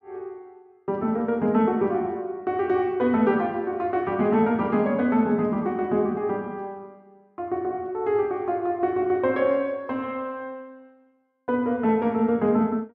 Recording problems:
none

